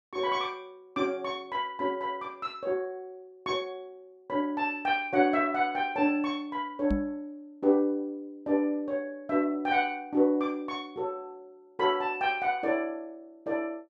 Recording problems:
knock on the microphone; at 7 s; peak +3 dB vs average level

